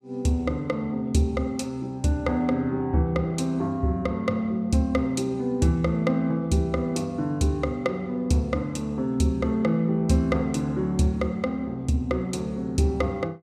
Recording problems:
none

